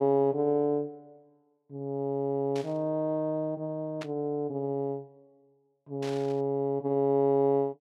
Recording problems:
static burst; at 2.5 s, at 4 s and at 6 s; peak -8 dB vs average level

